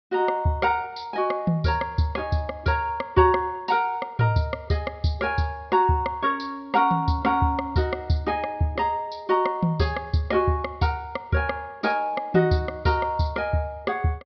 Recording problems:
low-pass filter; nothing above 5.5 kHz

